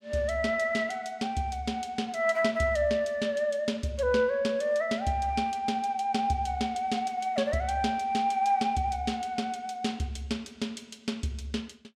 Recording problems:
none

